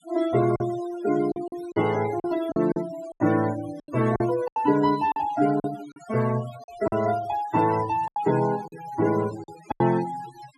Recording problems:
denoising artefacts; signal-to-artefact ratio 16 dB
lost packets; 10% of the sound replaced, filled with silence

